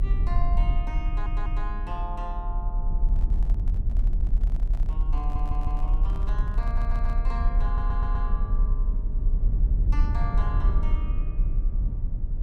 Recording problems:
rumble; below 46 Hz, strongest tone 30 Hz, SNR -11 dB
stutter; 4 times, first at 1 s
handling noise; from 3 to 7.5 s; peak -6 dB vs average level

